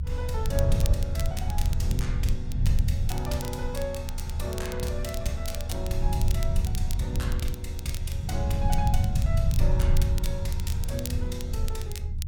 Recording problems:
low-frequency rumble; below 94 Hz, strongest tone 24 Hz, SNR -6 dB
crackling; vinyl, SNR 8 dB

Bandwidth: 17 kHz